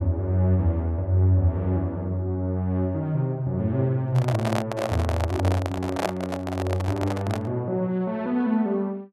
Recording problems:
handling noise; from 4 to 7.5 s; peak +4 dB vs average level

